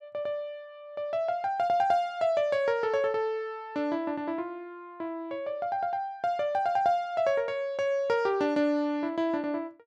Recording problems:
none

